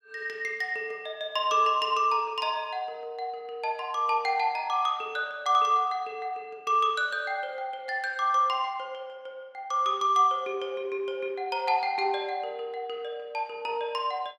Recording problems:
none

